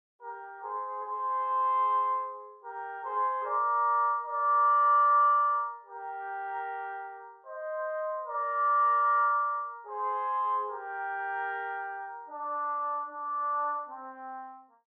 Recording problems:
none

